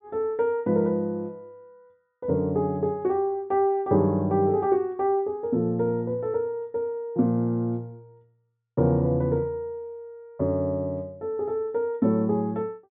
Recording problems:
treble cut off; nothing above 4 kHz

